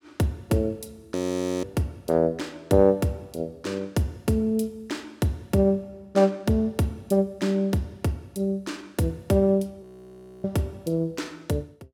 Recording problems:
audio freezing; at 1 s and at 10 s for 0.5 s

